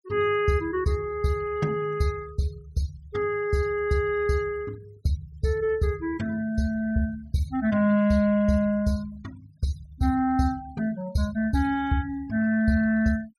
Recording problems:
denoising artefacts; signal-to-artefact ratio 23 dB

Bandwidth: 16 kHz